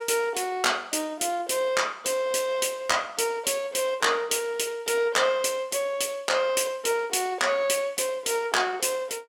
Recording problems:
none

